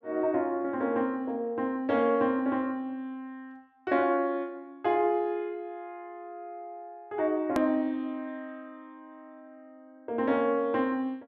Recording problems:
edit click; at 7.5 s

